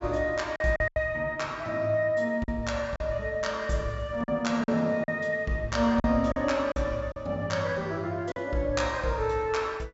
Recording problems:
treble cut off; nothing above 8 kHz
packet loss; 6% of the sound replaced, filled with silence

